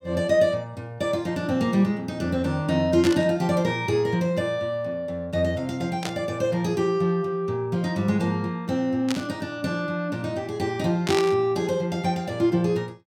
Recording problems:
burst of static; 4 times, first at 3 s; peak 0 dB vs average level

